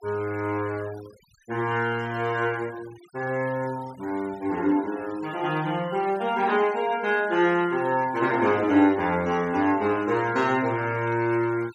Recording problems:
noise reduction artefacts; signal-to-artefact ratio 21 dB

